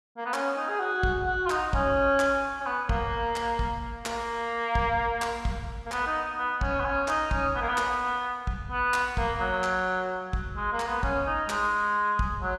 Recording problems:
none

